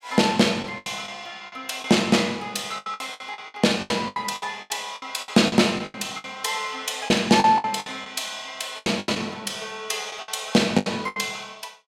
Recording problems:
lost packets; 15% of the sound replaced, filled with the last packet

